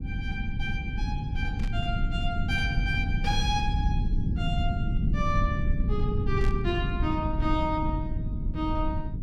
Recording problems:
rumble; below 130 Hz, SNR -3 dB
burst of static; at 1.5 s and at 6.5 s; peak -7 dB vs average level

